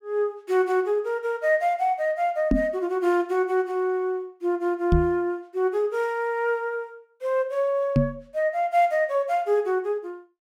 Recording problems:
microphone thump; at 2.5 s, at 5 s and at 8 s; peak +7 dB vs average level

